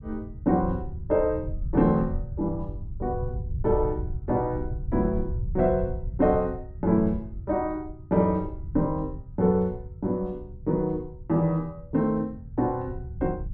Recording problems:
rumble; below 110 Hz, SNR 9 dB

